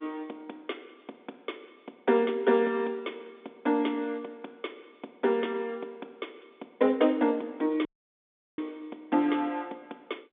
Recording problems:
telephone audio; 190 Hz to 3.6 kHz, G.711
audio cutting out; at 8 s for 0.5 s

